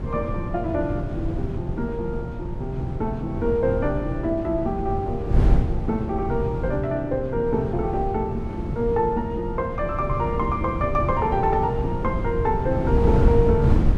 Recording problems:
wind noise; below 150 Hz, SNR 2 dB

